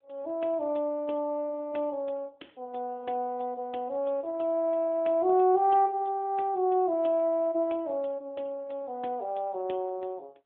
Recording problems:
telephone audio; 280 Hz to 3.5 kHz, AMR-NB

